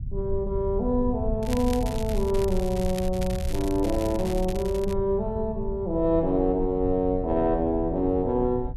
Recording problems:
rumble; below 90 Hz, SNR 8 dB
crackling; from 1.5 to 5 s; loose cable, SNR 16 dB

